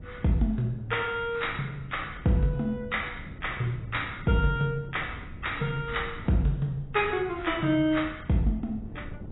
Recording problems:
lossy codec; AAC, log-spectral distance 4 dB, nothing above 3.8 kHz
wind noise; below 190 Hz, SNR 15 dB

